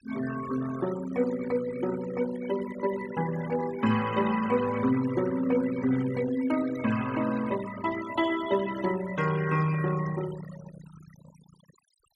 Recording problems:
noise reduction artefacts; signal-to-artefact ratio 12 dB

